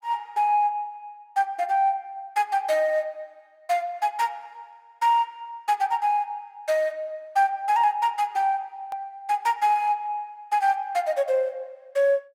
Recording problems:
click at an edit; at 9 s

